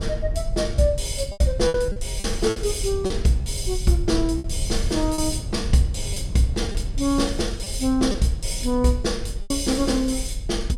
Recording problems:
low-frequency rumble; below 68 Hz, SNR 7 dB
wind on the microphone; below 280 Hz, SNR 19 dB
packet loss; 6% of the sound replaced, filled with repeated pitch periods

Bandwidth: 16 kHz